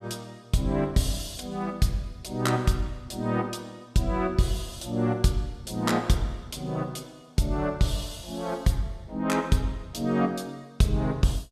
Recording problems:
none

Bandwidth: 14.5 kHz